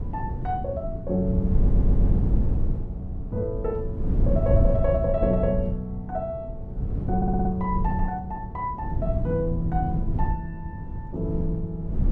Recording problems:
wind on the microphone; below 110 Hz, SNR -1 dB
stutter; at 1.5 s and at 7 s

